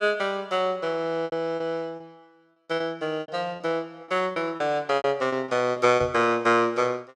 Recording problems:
lost packets; 10% of the sound replaced, filled with repeated pitch periods
microphone bump; at 6 s; peak -8 dB vs average level

